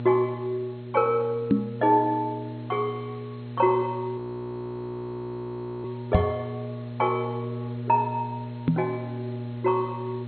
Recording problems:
lossy codec; MP2, log-spectral distance 4 dB
electrical hum; 60 Hz, harmonics up to 840 Hz, SNR 9 dB
hiss; SNR 27 dB
microphone thump; at 1.5 s, at 6 s and at 8.5 s; peak +10 dB vs average level
frozen audio; at 4 s for 1.5 s

